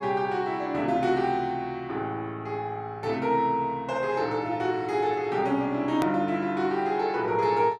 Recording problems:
hard cut with a click; at 6 s

